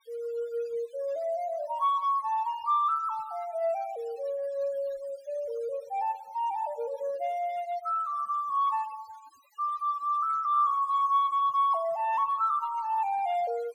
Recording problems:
denoising artefacts; signal-to-artefact ratio 24 dB

